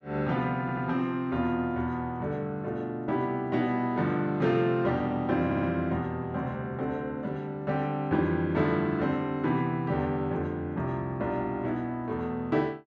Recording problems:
audio stuttering; at 0.5 s and at 5.5 s

